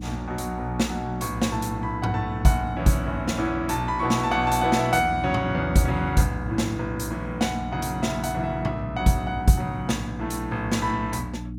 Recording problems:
hum; 60 Hz, harmonics up to 300 Hz, SNR 9 dB

